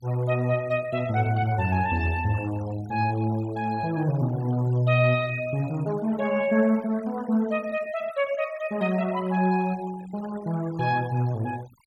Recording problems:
noise reduction artefacts; signal-to-artefact ratio 21 dB

